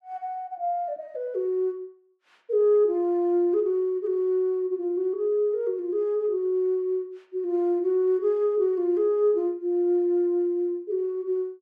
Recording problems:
none

